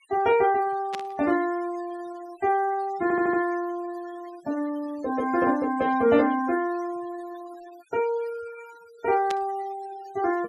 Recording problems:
denoising artefacts; signal-to-artefact ratio 20 dB
static burst; at 1 s and at 9.5 s; peak -6 dB vs average level
stutter; at 3 s

